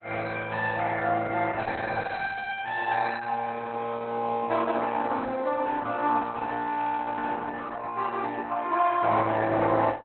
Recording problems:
lossy codec; Opus, log-spectral distance 4 dB, nothing above 4.1 kHz

